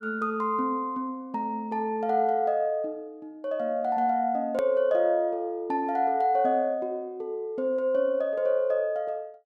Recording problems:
edit click; at 4.5 s

